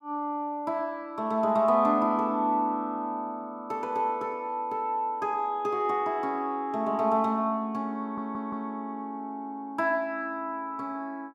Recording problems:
stutter; at 8 s

